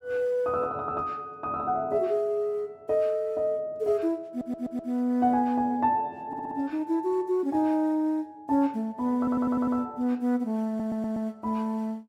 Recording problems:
stutter; 4 times, first at 4.5 s

